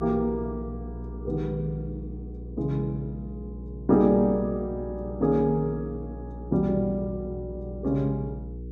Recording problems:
electrical hum; 60 Hz, harmonics up to 480 Hz, SNR 11 dB

